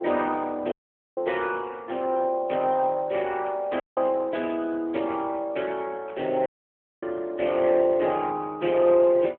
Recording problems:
telephone audio; 260 Hz to 3.1 kHz, AMR-NB
dropout; at 0.5 s, at 4 s and at 6.5 s for 0.5 s
burst of static; at 1 s, at 3.5 s and at 6 s; peak -17 dB vs average level

